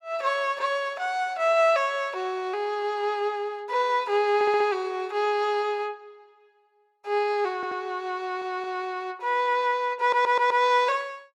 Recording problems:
stutter; 4 times, first at 4.5 s

